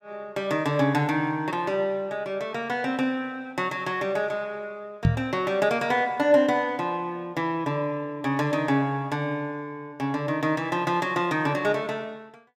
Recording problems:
microphone thump; at 5 s; peak +8 dB vs average level

